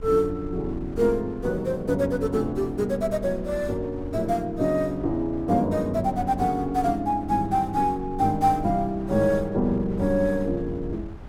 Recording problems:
wind noise; below 88 Hz, SNR 16 dB

